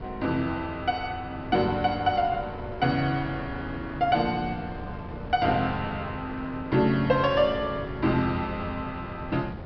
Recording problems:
treble cut off; nothing above 5.5 kHz
wind noise; below 440 Hz, SNR 12 dB

